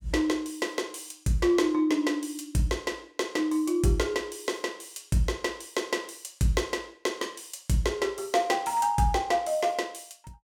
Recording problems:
none

